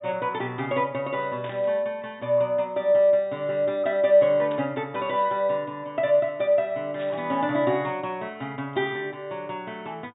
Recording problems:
low-pass filter; nothing above 4 kHz
burst of static; at 1.5 s, at 4.5 s and at 7 s; peak -12 dB vs average level

